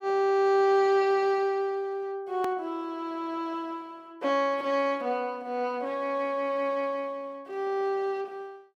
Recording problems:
click at an edit; at 2.5 s

